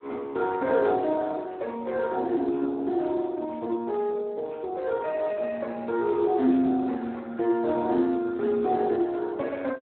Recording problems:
telephone audio; 190 Hz to 2.1 kHz, Speex

